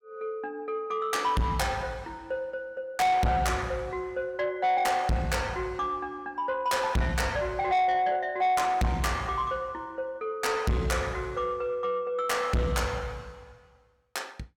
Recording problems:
distorted audio; soft clipping, signal-to-distortion ratio 6 dB

